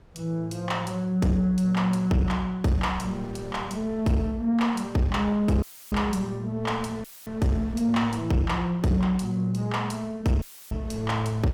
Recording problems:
distorted audio; soft clipping, signal-to-distortion ratio 10 dB
wind on the microphone; below 500 Hz, SNR 22 dB
audio cutting out; at 5.5 s, at 7 s and at 10 s; filled with static

